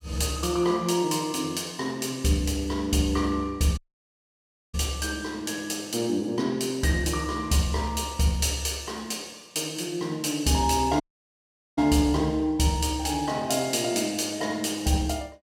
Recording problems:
audio cutting out; at 4 s for 1 s and at 11 s for 1 s

